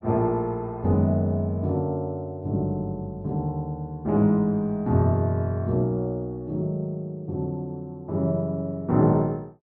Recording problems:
none

